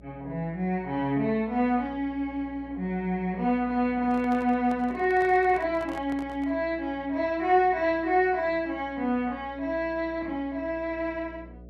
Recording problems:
hum; 60 Hz, harmonics up to 660 Hz, SNR 22 dB
handling noise; from 4 to 6.5 s; peak -11 dB vs average level

